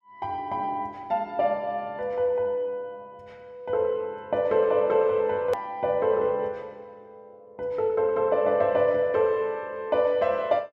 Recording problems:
click at an edit; at 5.5 s

